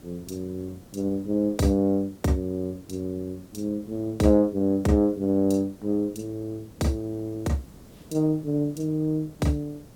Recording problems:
background hiss; SNR 23 dB

